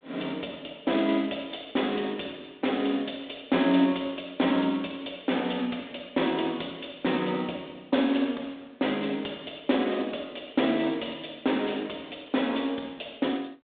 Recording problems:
phone line; 220 Hz to 3.7 kHz, G.726

